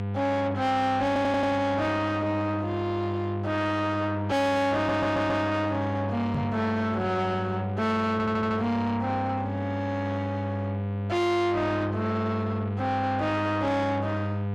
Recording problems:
distorted audio; soft clipping, signal-to-distortion ratio 7 dB
hum; 50 Hz, harmonics up to 1.2 kHz, SNR 5 dB
audio stuttering; at 1 s, at 5 s and at 8 s
knock on the microphone; at 6.5 s; peak 0 dB vs average level

